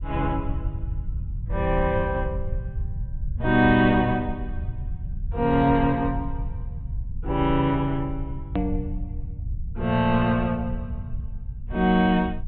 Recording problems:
treble cut off; nothing above 4 kHz
rumble; below 90 Hz, SNR 9 dB
hard cut with a click; at 8.5 s

